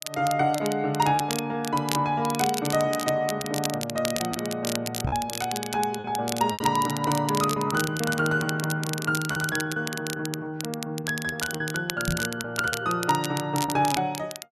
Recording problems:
crackle; vinyl, SNR 7 dB
packet loss; 7% of the sound replaced, filled with repeated pitch periods
microphone bump; at 5 s and at 12 s; peak +4 dB vs average level

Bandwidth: 13 kHz